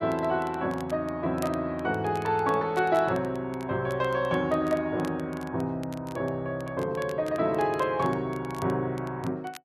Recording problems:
crackle; vinyl, SNR 22 dB

